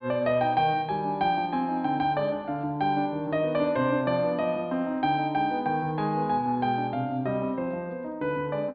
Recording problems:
treble missing; nothing above 4.8 kHz

